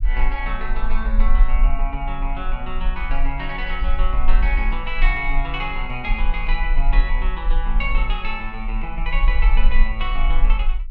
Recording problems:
low-frequency rumble; below 36 Hz, strongest tone 18 Hz, SNR -4 dB

